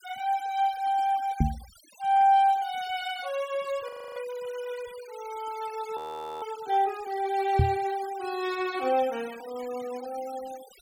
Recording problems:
noise reduction artefacts; signal-to-artefact ratio 19 dB
knock on the microphone; at 1.5 s and at 7.5 s; peak +8 dB vs average level
frozen audio; at 4 s and at 6 s

